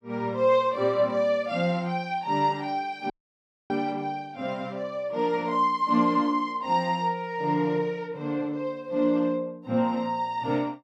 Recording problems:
audio cutting out; at 3 s for 0.5 s

